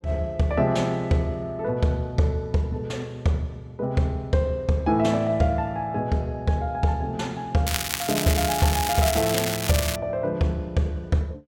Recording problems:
crackle; from 7.5 to 10 s; loose cable, SNR 3 dB

